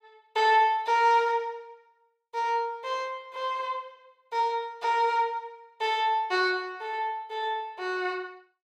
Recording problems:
none

